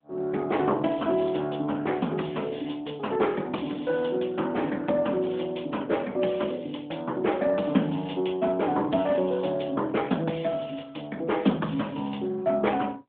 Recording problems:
telephone audio; 170 Hz to 3.6 kHz, AMR-NB

